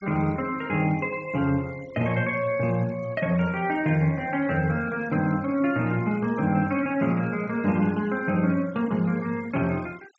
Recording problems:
treble missing; nothing above 8 kHz
noise reduction artefacts; signal-to-artefact ratio 23 dB

